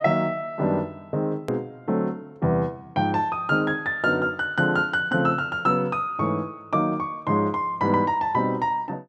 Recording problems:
hard cut with a click; at 1.5 s

